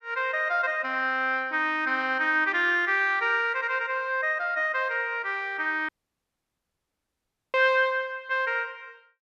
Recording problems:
dropout; at 6 s for 1.5 s

